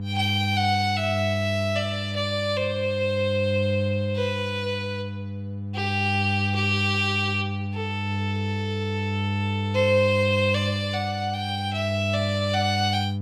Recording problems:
electrical hum; 50 Hz, harmonics up to 500 Hz, SNR 3 dB

